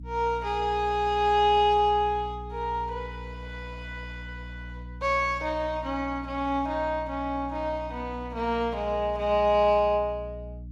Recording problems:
electrical hum; 60 Hz, harmonics up to 300 Hz, SNR 15 dB

